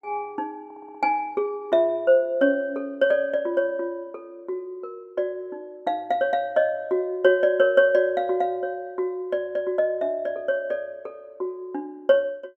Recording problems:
stutter; at 0.5 s

